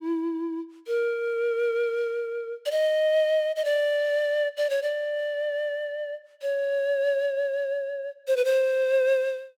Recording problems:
none

